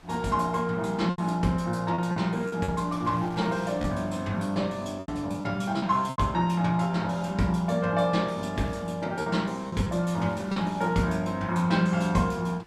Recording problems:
wind on the microphone; below 2.6 kHz, SNR 25 dB
packet loss; 5% of the sound replaced, filled with repeated pitch periods

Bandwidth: 14.5 kHz